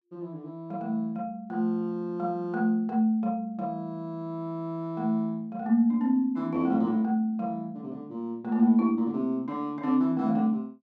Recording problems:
none

